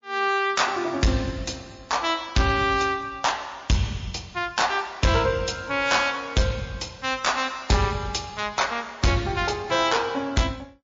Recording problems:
codec artefacts; MP3, log-spectral distance 5 dB
distorted audio; hard clipping, signal-to-distortion ratio 8 dB

